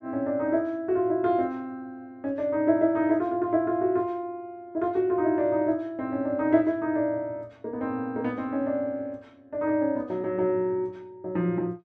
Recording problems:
none

